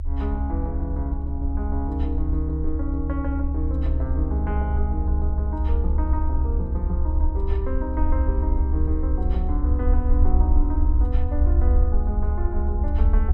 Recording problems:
low-frequency rumble; below 70 Hz, SNR -7 dB

